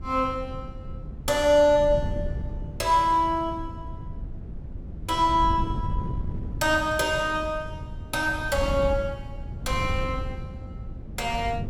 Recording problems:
wind noise; below 130 Hz, SNR 10 dB

